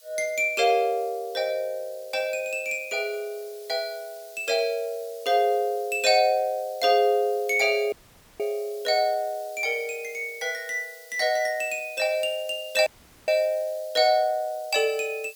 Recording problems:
background hiss; SNR 22 dB
audio cutting out; at 8 s and at 13 s

